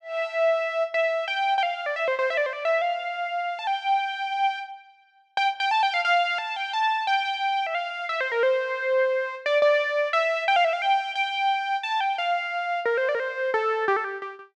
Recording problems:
none

